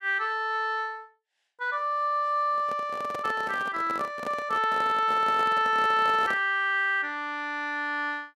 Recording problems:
microphone handling noise; from 2.5 to 6.5 s; peak -7 dB vs average level

